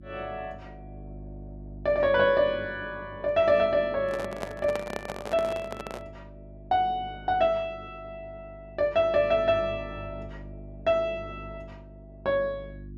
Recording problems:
hum; 50 Hz, harmonics up to 350 Hz, SNR 19 dB
handling noise; from 4 to 6 s; peak -3 dB vs average level

